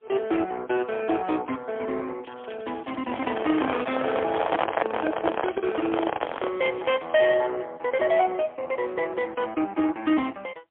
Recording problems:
telephone audio; 280 Hz to 3.4 kHz, AMR-NB, then MP3
crackling; from 2 to 4.5 s and from 5.5 to 7.5 s; loose cable, SNR 21 dB
handling noise; from 3 to 6.5 s; peak +8 dB vs average level

